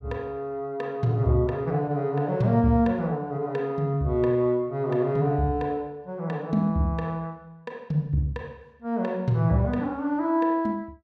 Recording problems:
none

